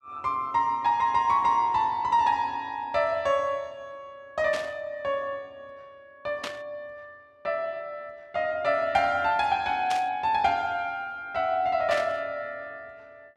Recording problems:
static burst; 4 times, first at 4.5 s; peak -3 dB vs average level

